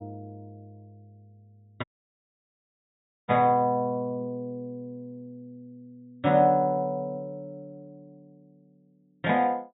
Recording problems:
low-pass filter; nothing above 4 kHz
audio cutting out; at 2 s for 1.5 s

